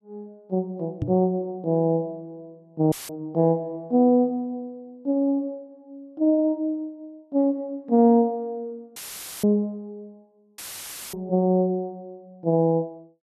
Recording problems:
knock on the microphone; at 1 s and at 11 s; peak 0 dB vs average level
audio cutting out; at 3 s, at 9 s and at 11 s for 0.5 s; filled with static

